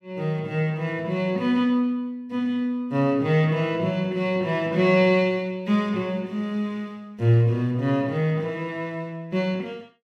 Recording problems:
none

